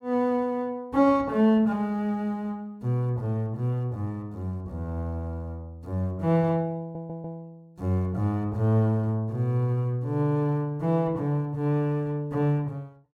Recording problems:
stutter; at 7 s

